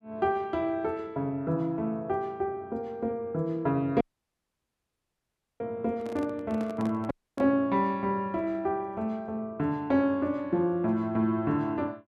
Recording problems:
audio cutting out; at 4 s for 1.5 s and at 7 s
handling noise; from 6 to 7.5 s; peak -8 dB vs average level

